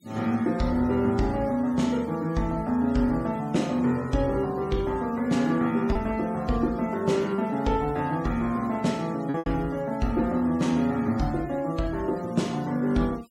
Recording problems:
noise reduction artefacts; signal-to-artefact ratio 24 dB
lost packets; 1.2% of the sound replaced, filled with repeated pitch periods

